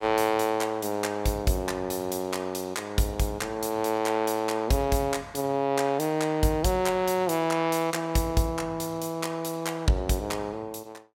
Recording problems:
none

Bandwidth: 16.5 kHz